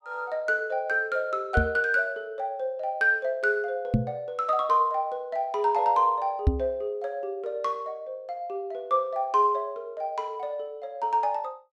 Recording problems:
microphone bump; at 1.5 s, at 4 s and at 6.5 s; peak +9 dB vs average level

